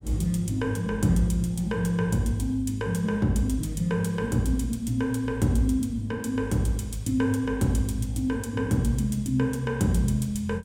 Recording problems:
none

